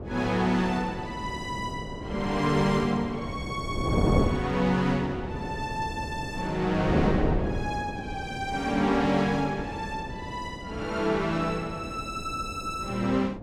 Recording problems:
wind on the microphone; below 440 Hz, SNR 5 dB

